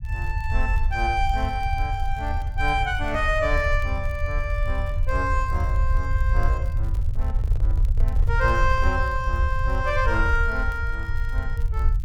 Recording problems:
low-frequency rumble; below 74 Hz, SNR 0 dB
crackling; vinyl, SNR 29 dB
microphone handling noise; from 7 to 9 s; peak -10 dB vs average level

